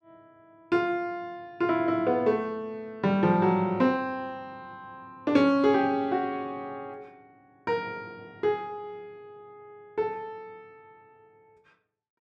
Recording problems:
none

